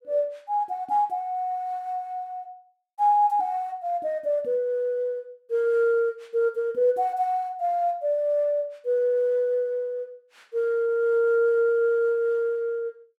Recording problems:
none

